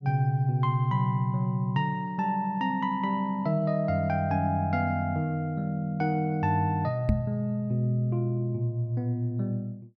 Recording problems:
microphone bump; at 7 s; peak +6 dB vs average level

